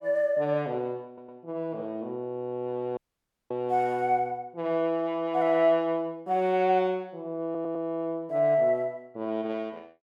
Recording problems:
audio stuttering; at 1 s and at 7.5 s
audio cutting out; at 3 s for 0.5 s

